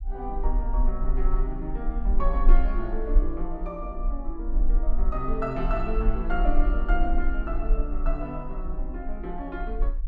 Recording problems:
low-frequency rumble; below 38 Hz, strongest tone 24 Hz, SNR -4 dB

